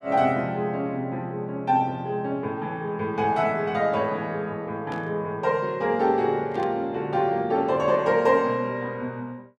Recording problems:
static burst; at 5 s and at 6.5 s; peak -12 dB vs average level

